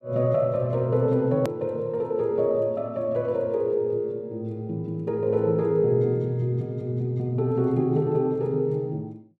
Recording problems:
edit click; at 1.5 s

